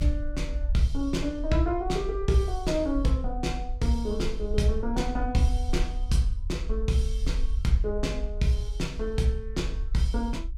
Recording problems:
rumble; below 52 Hz, SNR 5 dB

